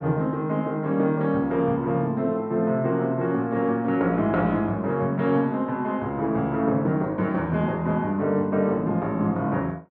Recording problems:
none

